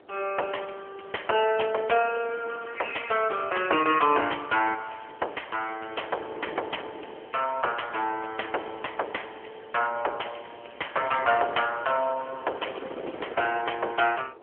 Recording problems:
phone line; 370 Hz to 3.2 kHz, AMR-NB
wind noise; below 680 Hz, SNR 17 dB

